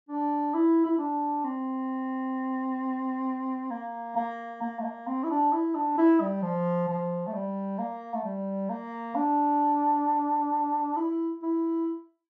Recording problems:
none

